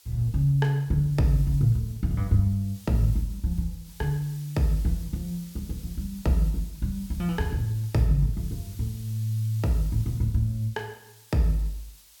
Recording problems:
hiss; slope +3 dB per octave, SNR 22 dB

